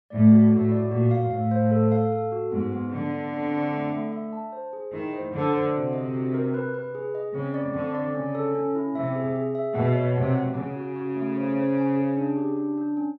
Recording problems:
none

